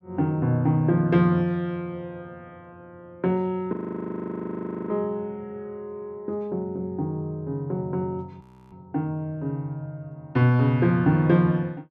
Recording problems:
audio freezing; at 3.5 s for 1 s and at 8.5 s

